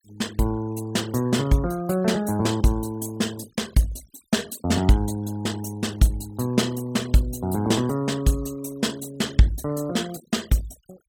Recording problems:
noise reduction artefacts; signal-to-artefact ratio 21 dB

